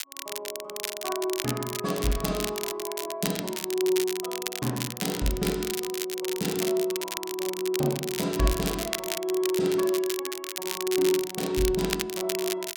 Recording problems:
crackle; vinyl, SNR 5 dB

